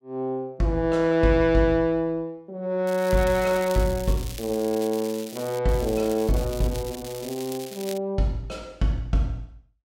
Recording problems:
crackling; from 3 to 5.5 s and from 5.5 to 8 s; loose cable, SNR 15 dB

